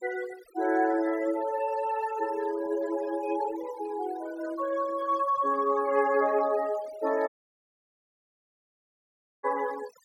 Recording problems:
denoising artefacts; signal-to-artefact ratio 18 dB
audio cutting out; at 7.5 s for 2 s

